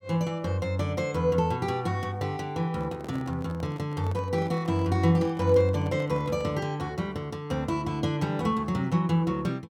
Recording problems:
microphone handling noise; from 2.5 to 6.5 s; peak -12 dB vs average level

